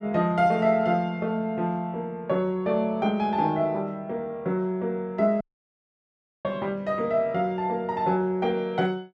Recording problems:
dropout; at 5.5 s for 1 s

